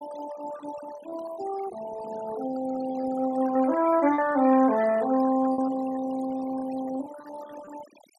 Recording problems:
noise reduction artefacts; signal-to-artefact ratio 14 dB
lost packets; 8% of the sound replaced, filled with repeated pitch periods

